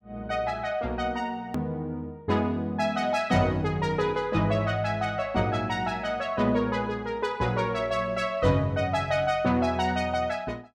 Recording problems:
edit click; at 1.5 s

